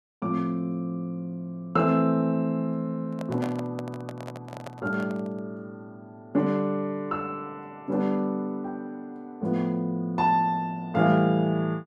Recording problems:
microphone handling noise; from 3 to 5.5 s; peak -5 dB vs average level

